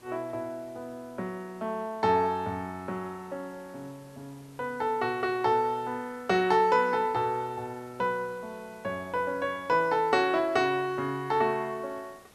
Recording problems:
background hiss; slope -4 dB per octave, SNR 27 dB

